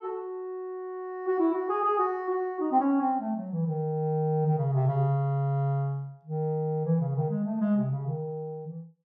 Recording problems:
none

